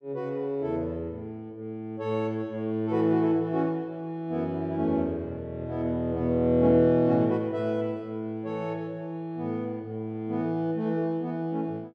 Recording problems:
none

